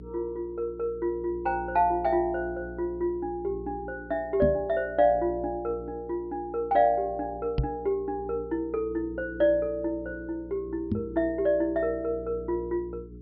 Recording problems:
treble missing; nothing above 5.5 kHz
electrical hum; 60 Hz, harmonics up to 420 Hz, SNR 16 dB
microphone thump; at 4.5 s, at 7.5 s and at 11 s; peak +5 dB vs average level

